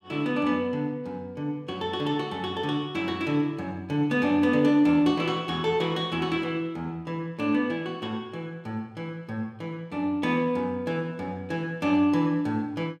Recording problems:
none

